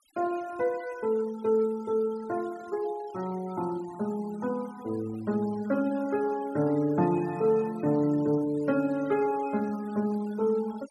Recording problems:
denoising artefacts; signal-to-artefact ratio 22 dB

